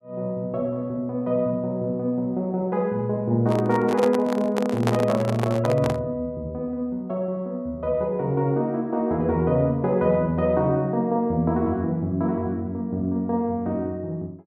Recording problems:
microphone handling noise; from 3.5 to 6 s; peak +3 dB vs average level

